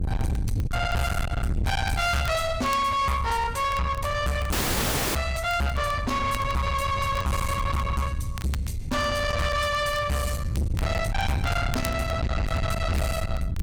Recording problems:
distorted audio; soft clipping, signal-to-distortion ratio 6 dB
wind noise; below 200 Hz, SNR 4 dB
crackle; vinyl, SNR 20 dB
dropout; at 4.5 s for 0.5 s

